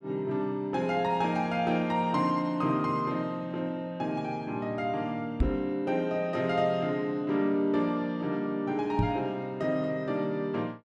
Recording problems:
microphone thump; at 5.5 s and at 9 s; peak +6 dB vs average level

